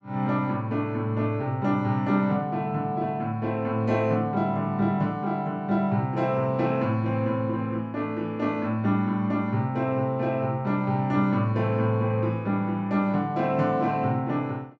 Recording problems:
none

